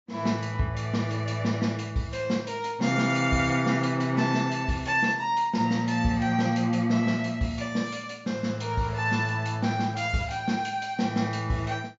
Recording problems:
treble cut off; nothing above 7.4 kHz

